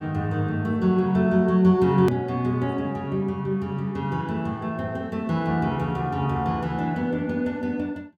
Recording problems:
edit click; at 2 s

